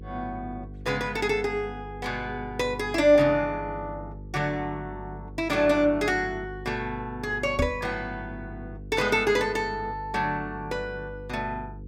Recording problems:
hum; 50 Hz, harmonics up to 500 Hz, SNR 15 dB
microphone bump; at 7.5 s; peak +4 dB vs average level

